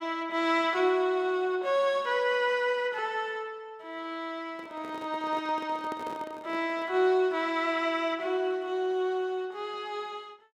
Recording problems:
microphone handling noise; from 4.5 to 7 s; peak -7 dB vs average level

